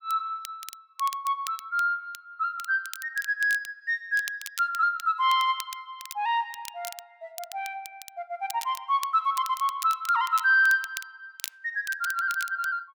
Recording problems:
crackle; vinyl, SNR 15 dB

